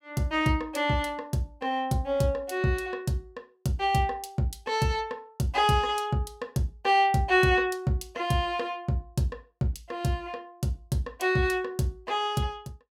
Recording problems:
none

